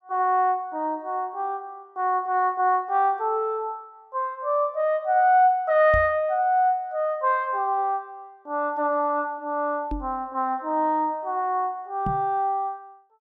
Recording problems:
microphone bump; at 6 s, at 10 s and at 12 s; peak -2 dB vs average level

